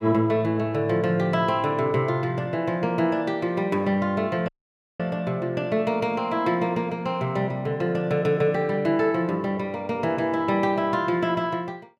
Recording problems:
audio cutting out; at 4.5 s for 0.5 s

